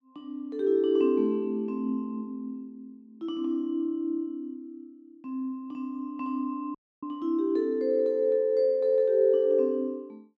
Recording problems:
audio cutting out; at 7 s

